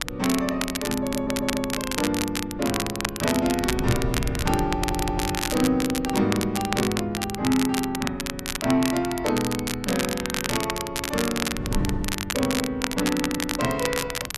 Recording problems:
wind on the microphone; below 170 Hz, SNR 11 dB
crackle; vinyl, SNR 4 dB
audio stuttering; at 1 s and at 4.5 s

